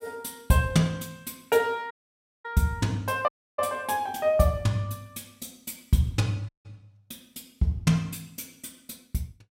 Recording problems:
dropout; at 2 s for 0.5 s, at 3.5 s and at 6.5 s

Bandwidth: 16 kHz